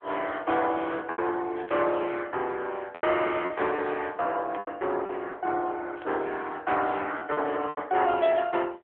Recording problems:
phone line; 300 Hz to 3.5 kHz, AMR-NB
packet loss; 6% of the sound replaced, filled with repeated pitch periods
static burst; at 1.5 s, at 4.5 s and at 6 s; peak -12 dB vs average level

